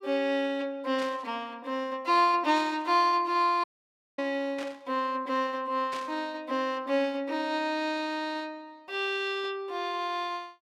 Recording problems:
burst of static; 4 times, first at 1 s; peak -8 dB vs average level
audio cutting out; at 3.5 s for 0.5 s

